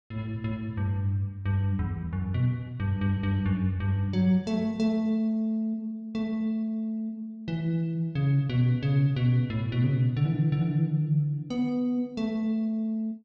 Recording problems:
none

